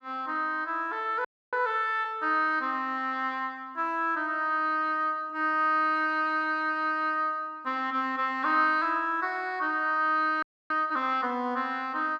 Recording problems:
audio freezing; at 1.5 s and at 10 s

